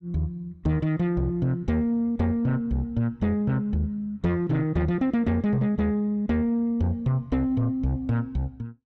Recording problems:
distorted audio; soft clipping, signal-to-distortion ratio 12 dB

